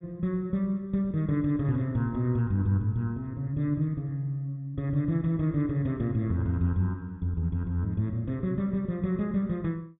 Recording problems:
low-pass filter; nothing above 4 kHz

